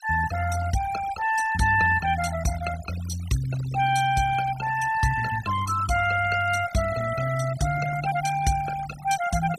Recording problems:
noise reduction artefacts; signal-to-artefact ratio 14 dB

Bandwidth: 15.5 kHz